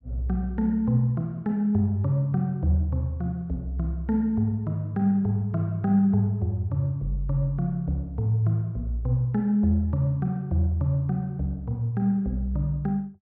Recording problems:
none

